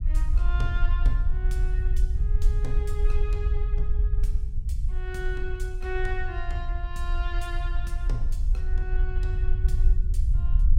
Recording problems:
rumble; below 54 Hz, SNR -10 dB

